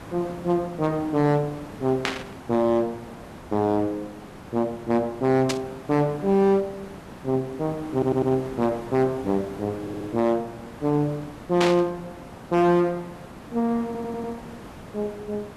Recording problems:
distortion; hard clipping, uneven, signal-to-distortion ratio 11 dB
hiss; slope -7 dB per octave, SNR 16 dB
static burst; at 2 s, at 5.5 s and at 12 s; peak +3 dB vs average level
stutter; at 8 s, at 10 s and at 14 s

